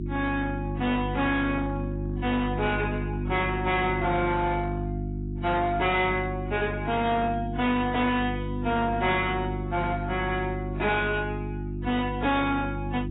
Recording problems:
lossy codec; AAC, log-spectral distance 3 dB, nothing above 3.7 kHz
distortion; hard clipping, signal-to-distortion ratio 12 dB
electrical hum; 50 Hz, harmonics up to 350 Hz, SNR 5 dB

